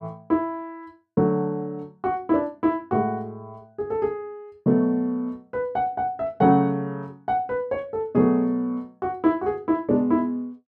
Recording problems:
none

